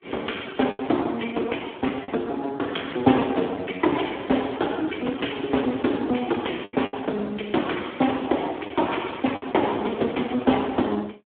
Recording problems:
phone line; 220 Hz to 3.5 kHz, Speex
packet loss; 3% of the sound replaced, filled with the last packet

